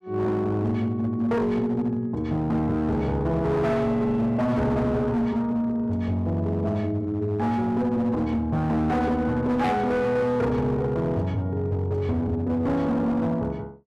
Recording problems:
distortion; hard clipping, signal-to-distortion ratio 10 dB

